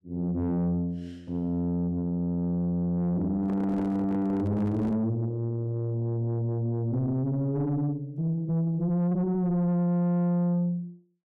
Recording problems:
distorted audio; soft clipping, signal-to-distortion ratio 7 dB
handling noise; from 3.5 to 5 s; peak -2 dB vs average level

